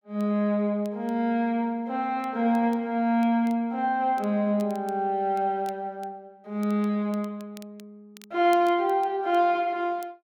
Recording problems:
crackling; vinyl, SNR 29 dB

